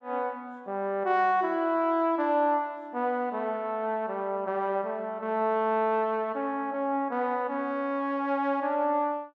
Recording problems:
none

